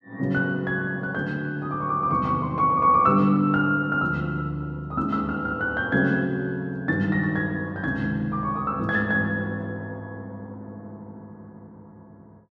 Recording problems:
none

